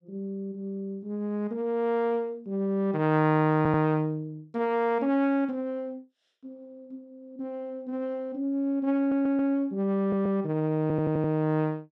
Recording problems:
audio stuttering; 4 times, first at 3.5 s

